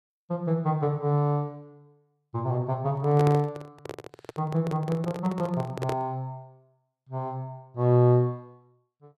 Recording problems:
microphone handling noise; from 3 to 6 s; peak -1 dB vs average level

